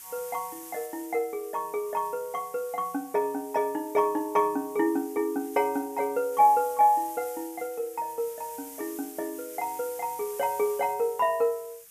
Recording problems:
background hiss; SNR 16 dB

